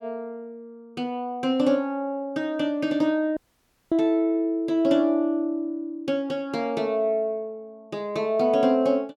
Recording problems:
dropout; at 3.5 s for 0.5 s

